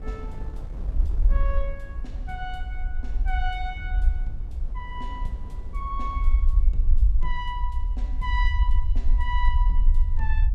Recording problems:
low-frequency rumble; below 50 Hz, SNR -8 dB
wind noise; below 230 Hz, SNR 11 dB

